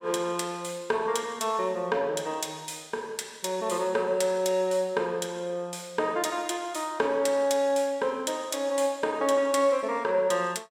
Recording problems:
none

